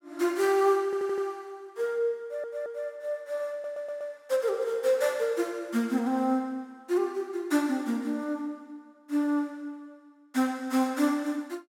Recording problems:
stutter; at 1 s, at 2 s and at 3.5 s

